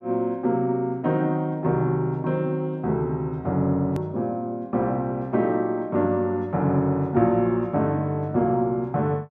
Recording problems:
edit click; at 4 s

